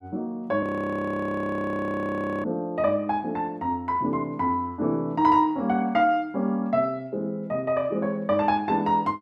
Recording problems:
frozen audio; at 0.5 s for 2 s

